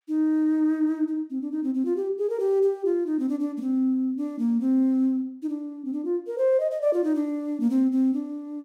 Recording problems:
none

